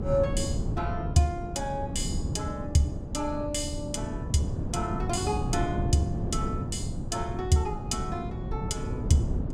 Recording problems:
wind noise; below 200 Hz, SNR 3 dB

